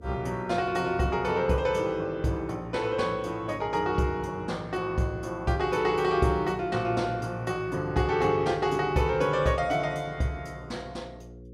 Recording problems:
hum; 60 Hz, harmonics up to 540 Hz, SNR 20 dB

